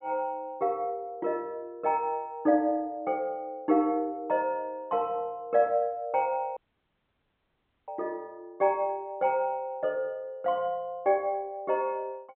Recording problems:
low-pass filter; nothing above 4 kHz
audio cutting out; at 6.5 s for 1.5 s

